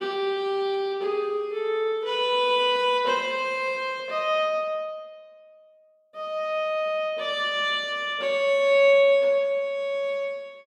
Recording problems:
none

